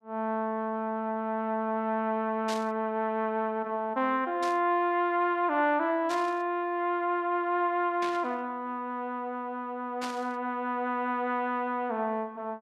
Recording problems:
burst of static; 5 times, first at 2.5 s; peak -5 dB vs average level

